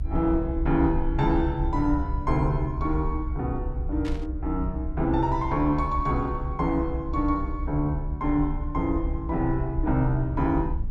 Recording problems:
low-frequency rumble; below 68 Hz, SNR 5 dB
static burst; at 4 s; peak -10 dB vs average level

